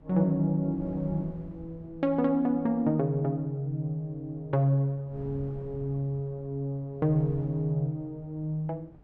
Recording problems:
wind on the microphone; below 220 Hz, SNR 20 dB

